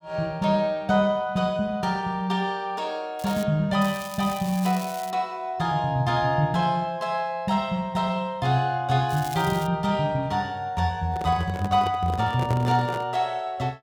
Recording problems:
crackle; at 3 s, from 4 to 5 s and at 9 s; loose cable, SNR 16 dB
handling noise; from 11 to 13 s; peak -4 dB vs average level

